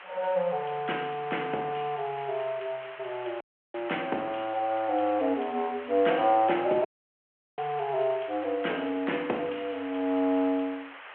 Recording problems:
phone line; 300 Hz to 3.2 kHz, G.726
background hiss; SNR 15 dB
dropout; at 3.5 s and at 7 s for 0.5 s

